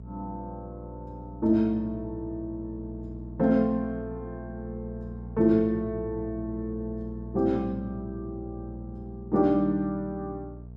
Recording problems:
hum; 60 Hz, harmonics up to 480 Hz, SNR 12 dB

